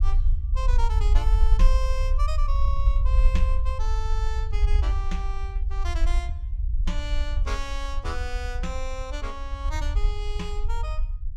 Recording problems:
rumble; below 54 Hz, SNR -9 dB

